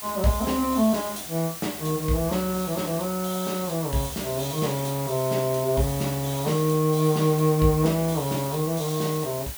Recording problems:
hiss; slope 0 dB per octave, SNR 10 dB

